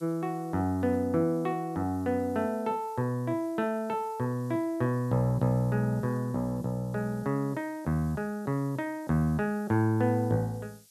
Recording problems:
background hiss; slope +5 dB per octave, SNR 27 dB

